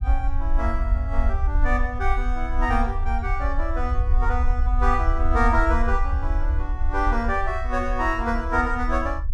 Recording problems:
rumble; below 60 Hz, SNR 0 dB

